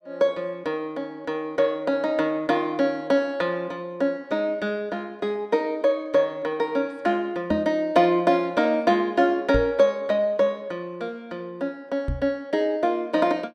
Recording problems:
microphone bump; at 7.5 s, at 9.5 s and at 12 s; peak 0 dB vs average level

